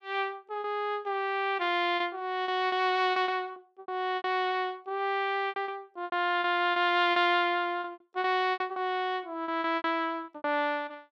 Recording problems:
packet loss; 13% of the sound replaced, filled with repeated pitch periods

